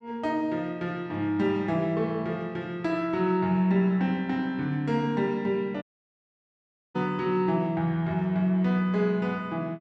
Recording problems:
dropout; at 6 s for 1 s

